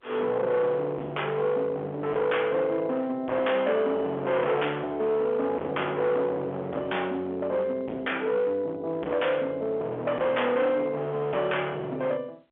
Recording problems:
phone line; 220 Hz to 3.4 kHz, G.711
distortion; hard clipping, uneven, signal-to-distortion ratio 7 dB

